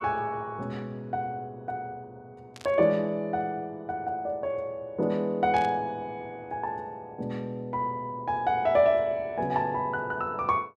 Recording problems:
burst of static; at 2.5 s and at 5.5 s; peak -9 dB vs average level

